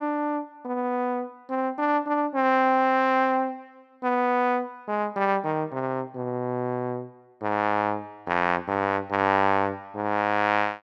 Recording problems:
none

